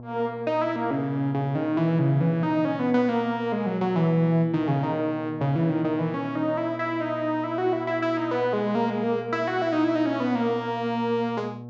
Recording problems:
treble missing; nothing above 8 kHz
hum; 60 Hz, harmonics up to 1.1 kHz, SNR 15 dB

